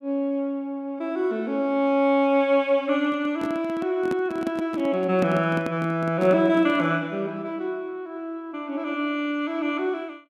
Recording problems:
handling noise; from 3 to 7 s; peak -1 dB vs average level

